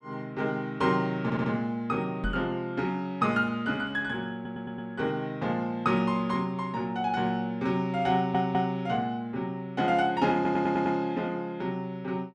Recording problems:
stutter; 4 times, first at 1 s
microphone bump; at 2 s; peak -1 dB vs average level

